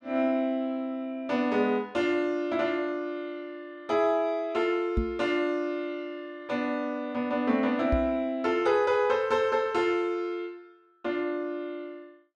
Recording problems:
microphone bump; at 5 s and at 8 s; peak +4 dB vs average level

